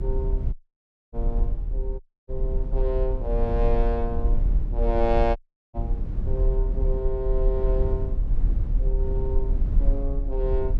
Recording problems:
low-frequency rumble; below 48 Hz, strongest tone 36 Hz, SNR -3 dB
audio cutting out; at 0.5 s for 0.5 s, at 2 s and at 5.5 s

